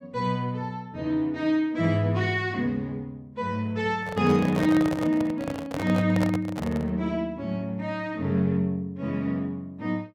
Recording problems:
handling noise; from 4 to 7 s; peak 0 dB vs average level

